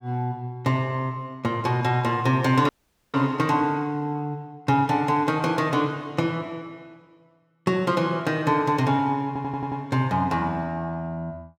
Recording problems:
audio cutting out; at 2.5 s
stutter; at 9.5 s

